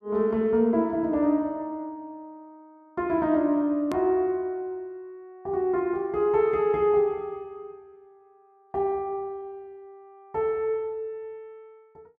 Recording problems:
hard cut with a click; at 4 s

